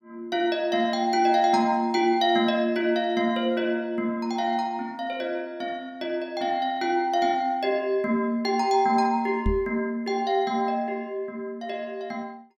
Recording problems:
knock on the microphone; at 9.5 s; peak +3 dB vs average level

